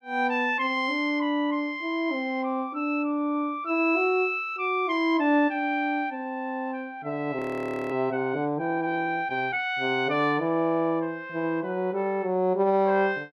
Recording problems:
frozen audio; at 7.5 s for 0.5 s

